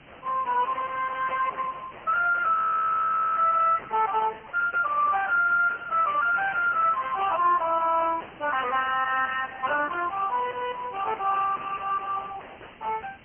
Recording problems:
phone line; 280 Hz to 2 kHz, AMR-NB
distorted audio; soft clipping, signal-to-distortion ratio 4 dB
background hiss; SNR 26 dB
frozen audio; at 2.5 s for 1 s

